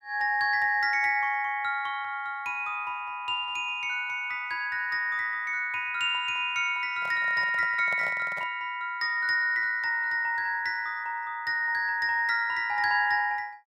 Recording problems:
handling noise; from 7 to 8.5 s; peak -10 dB vs average level

